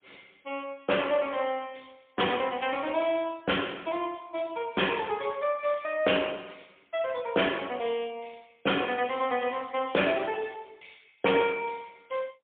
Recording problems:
telephone audio; 260 Hz to 3.4 kHz, AMR-NB, then MP3

